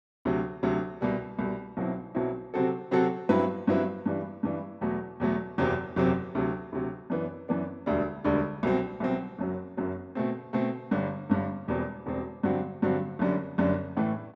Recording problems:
none

